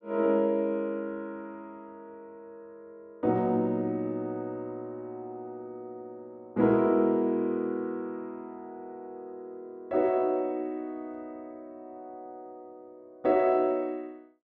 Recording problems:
none

